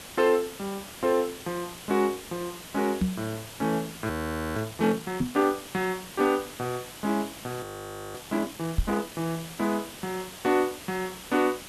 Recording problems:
background hiss; slope -2 dB per octave, SNR 12 dB
microphone thump; at 3 s, at 5 s and at 9 s; peak +7 dB vs average level
audio freezing; at 4 s and at 7.5 s for 0.5 s

